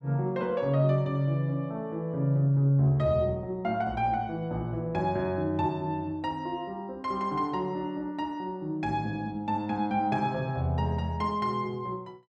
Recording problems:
none

